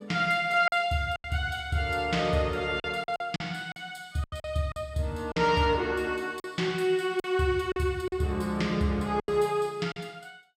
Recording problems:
lost packets; 8% of the sound replaced, filled with silence

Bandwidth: 15.5 kHz